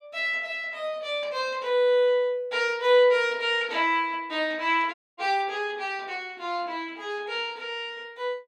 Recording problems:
dropout; at 5 s

